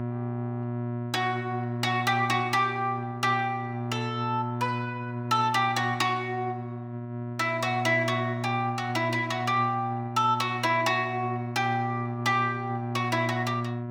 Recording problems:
hum; 60 Hz, harmonics up to 1.3 kHz, SNR 6 dB

